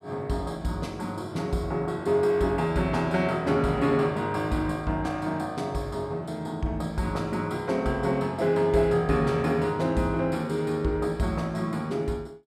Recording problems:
none

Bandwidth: 14.5 kHz